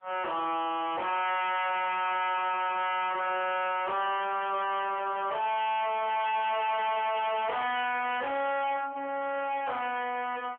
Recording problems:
phone line; 300 Hz to 3.3 kHz, AMR-NB
distorted audio; hard clipping, signal-to-distortion ratio 6 dB

